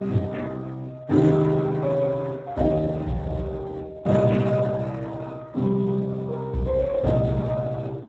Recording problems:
codec artefacts; MP3, then Speex, log-spectral distance 3 dB

